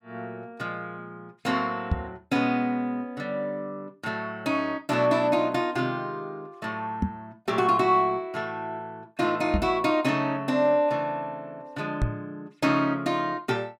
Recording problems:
microphone thump; 4 times, first at 2 s; peak +5 dB vs average level

